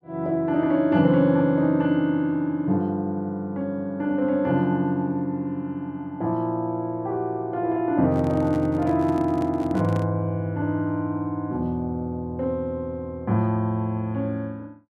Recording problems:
handling noise; from 8 to 10 s; peak -6 dB vs average level

